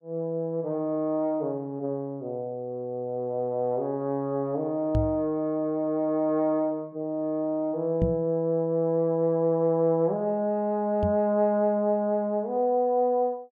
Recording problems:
knock on the microphone; at 5 s, at 8 s and at 11 s; peak +4 dB vs average level

